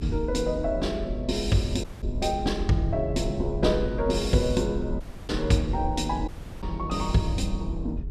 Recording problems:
hum; 60 Hz, harmonics up to 420 Hz, SNR 18 dB
low-frequency rumble; below 64 Hz, SNR 7 dB
dropout; at 2 s, at 5 s and at 6.5 s

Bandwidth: 14 kHz